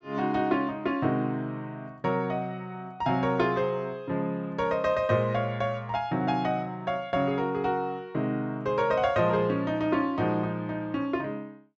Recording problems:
low-pass filter; nothing above 8 kHz

